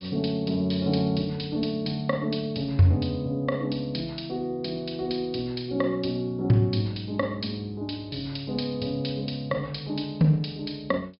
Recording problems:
low-pass filter; nothing above 5.5 kHz

